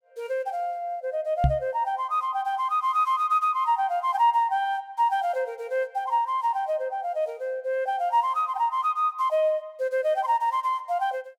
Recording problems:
microphone bump; at 1.5 s; peak +6 dB vs average level

